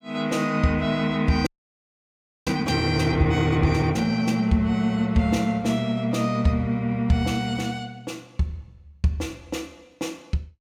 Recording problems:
frozen audio; at 1.5 s for 1 s

